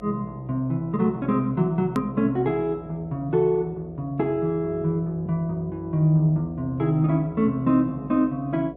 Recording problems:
hum; 60 Hz, harmonics up to 720 Hz, SNR 21 dB
edit click; at 2 s

